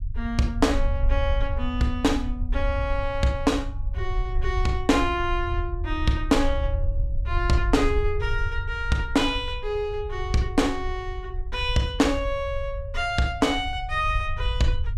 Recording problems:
rumble; below 72 Hz, SNR 5 dB

